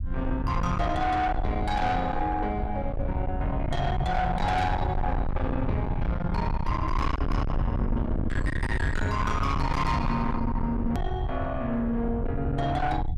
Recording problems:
distorted audio; soft clipping, signal-to-distortion ratio 6 dB
low-frequency rumble; below 150 Hz, SNR 2 dB
hard cut with a click; at 11 s

